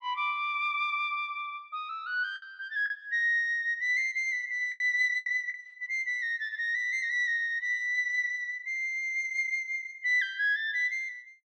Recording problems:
packet loss; 3% of the sound replaced, filled with the last packet

